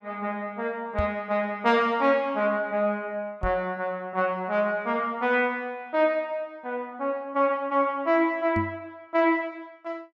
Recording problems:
knock on the microphone; at 1 s, at 3.5 s and at 8.5 s; peak 0 dB vs average level

